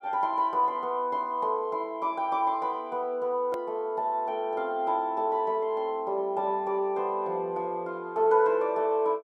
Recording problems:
click at an edit; at 3.5 s

